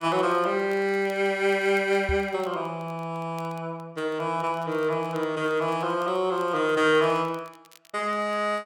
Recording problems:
crackle; vinyl, SNR 29 dB
microphone bump; at 2 s; peak -1 dB vs average level

